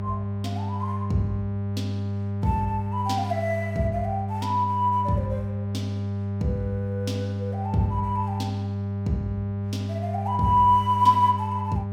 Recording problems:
electrical hum; 50 Hz, harmonics up to 1 kHz, SNR 4 dB

